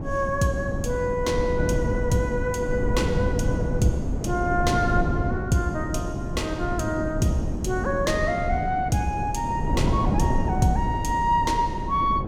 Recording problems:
wind on the microphone; below 250 Hz, SNR 2 dB

